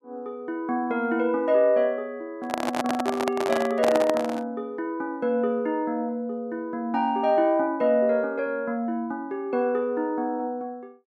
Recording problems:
handling noise; from 2.5 to 4.5 s; peak +3 dB vs average level

